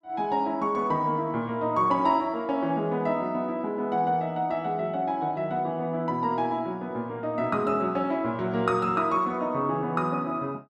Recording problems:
none

